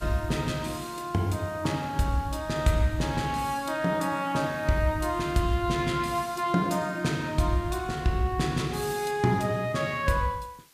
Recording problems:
hiss; slope +1 dB per octave, SNR 27 dB

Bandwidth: 15 kHz